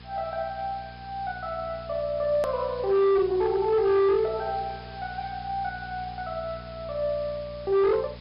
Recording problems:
low-pass filter; nothing above 5.5 kHz
lossy compression; MP3, log-spectral distance 7 dB
distorted audio; hard clipping, signal-to-distortion ratio 11 dB
hum; 60 Hz, harmonics up to 960 Hz, SNR 18 dB
hiss; SNR 22 dB
hard cut with a click; at 2.5 s

